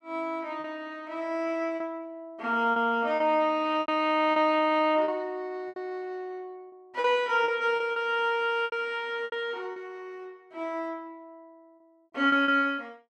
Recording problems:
lost packets; 7% of the sound replaced, filled with repeated pitch periods

